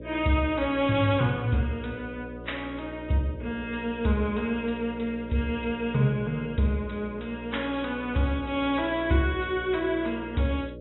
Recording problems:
treble missing; nothing above 3.4 kHz
lossy codec; G.722, then AAC, log-spectral distance 2 dB
electrical hum; 60 Hz, harmonics up to 600 Hz, SNR 13 dB

